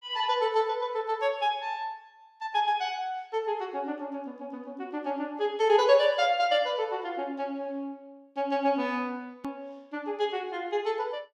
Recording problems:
click at an edit; at 9.5 s

